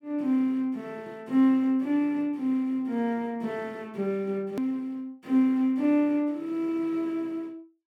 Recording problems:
edit click; at 4.5 s

